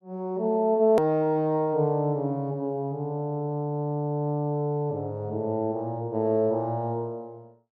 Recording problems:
edit click; at 1 s

